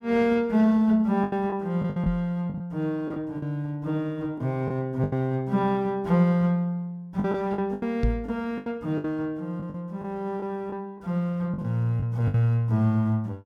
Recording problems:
packet loss; 8% of the sound replaced, filled with the last packet
knock on the microphone; at 2 s and at 8 s; peak +4 dB vs average level

